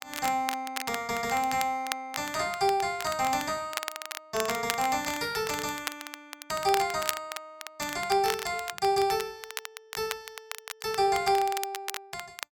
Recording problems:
crackling; vinyl, SNR 9 dB

